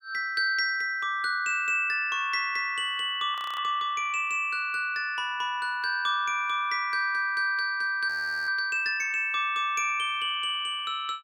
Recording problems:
frozen audio; at 3.5 s and at 8 s

